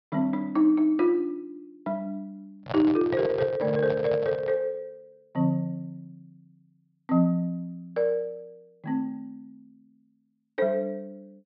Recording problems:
treble cut off; nothing above 5.5 kHz
microphone handling noise; from 2.5 to 4.5 s; peak -3 dB vs average level

